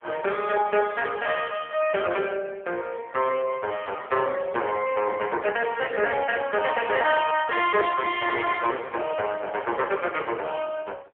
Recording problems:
phone line; 340 Hz to 3.4 kHz, AMR-NB

